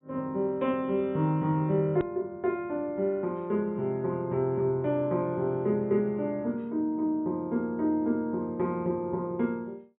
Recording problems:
treble missing; nothing above 3.8 kHz
edit click; at 2 s

